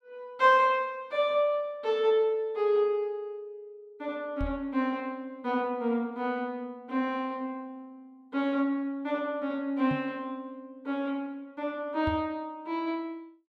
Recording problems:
microphone thump; at 4.5 s, at 10 s and at 12 s; peak -2 dB vs average level

